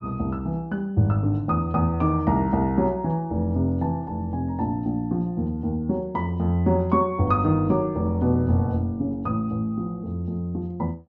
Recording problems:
low-pass filter; nothing above 7.4 kHz

